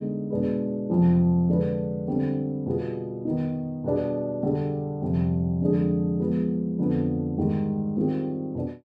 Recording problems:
none

